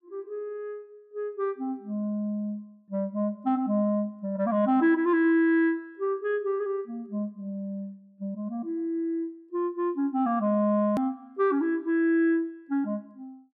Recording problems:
edit click; at 11 s

